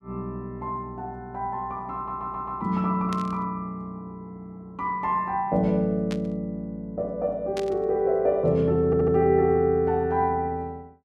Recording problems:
stutter; at 2 s and at 9 s
burst of static; at 3 s, at 6 s and at 7.5 s; peak -8 dB vs average level

